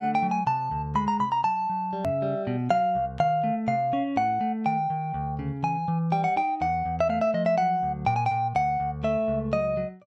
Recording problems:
edit click; at 2 s

